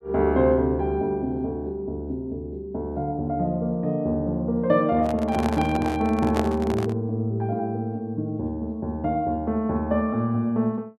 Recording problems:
microphone handling noise; from 5 to 7 s; peak 0 dB vs average level

